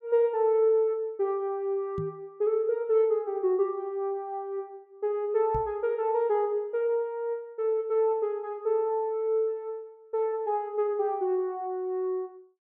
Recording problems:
knock on the microphone; at 2 s and at 5.5 s; peak -4 dB vs average level

